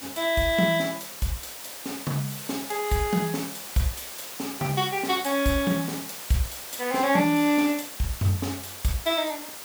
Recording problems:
hiss; slope -1 dB per octave, SNR 10 dB

